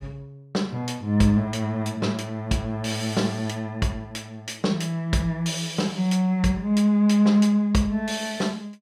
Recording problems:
none

